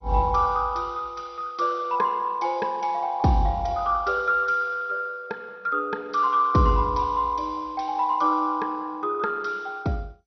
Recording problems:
codec artefacts; MP2, log-spectral distance 3 dB, nothing above 6 kHz

